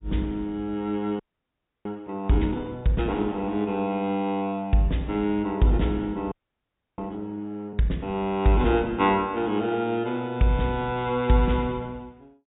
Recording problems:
treble cut off; nothing above 4 kHz
frozen audio; at 1 s for 0.5 s and at 6.5 s for 0.5 s

